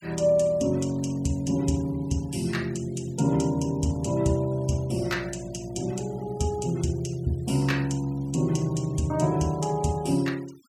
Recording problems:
denoising artefacts; signal-to-artefact ratio 23 dB

